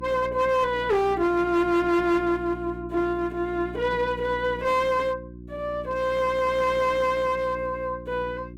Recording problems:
distorted audio; hard clipping, uneven, signal-to-distortion ratio 11 dB
mains hum; 60 Hz, harmonics up to 360 Hz, SNR 15 dB

